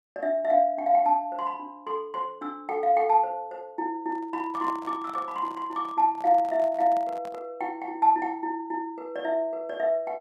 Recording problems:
microphone handling noise; from 4 to 7.5 s; peak -10 dB vs average level

